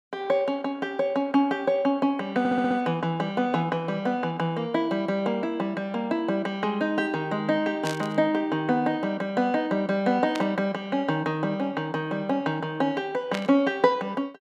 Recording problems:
stutter; at 2.5 s
static burst; at 8 s, at 10 s and at 13 s; peak -2 dB vs average level

